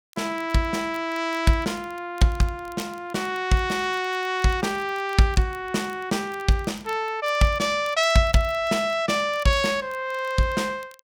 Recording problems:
crackling; vinyl, SNR 26 dB

